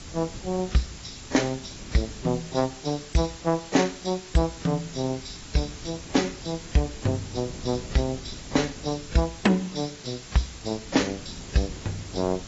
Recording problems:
lossy codec; AAC, log-spectral distance 17 dB, nothing above 8 kHz
hiss; slope 0 dB per octave, SNR 15 dB
wind noise; below 280 Hz, SNR 18 dB

